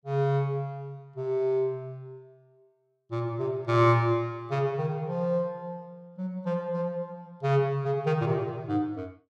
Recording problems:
none

